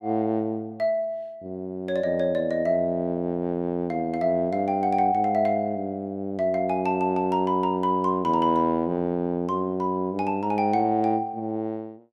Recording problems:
none

